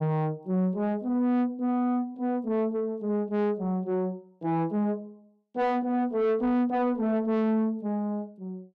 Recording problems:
distortion; soft clipping, signal-to-distortion ratio 11 dB

